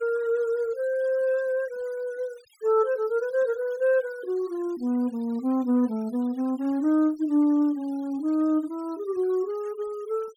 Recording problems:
noise reduction artefacts; signal-to-artefact ratio 27 dB

